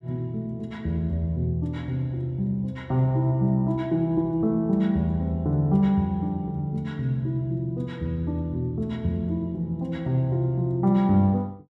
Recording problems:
none

